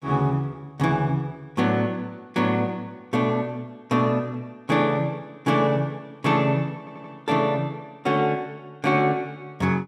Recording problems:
audio stuttering; at 7 s

